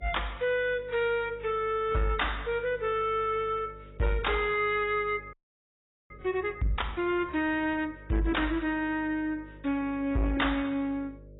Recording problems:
lossy compression; AAC, log-spectral distance 3 dB, nothing above 3.8 kHz
distortion; soft clipping, signal-to-distortion ratio 11 dB
electrical hum; 50 Hz, harmonics up to 600 Hz, SNR 21 dB
frozen audio; at 5.5 s for 1 s

